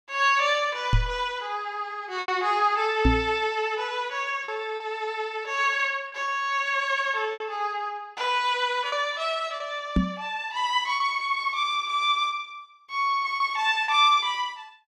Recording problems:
packet loss; 3% of the sound replaced, filled with repeated pitch periods
microphone bump; at 1 s, at 3 s and at 10 s; peak +7 dB vs average level

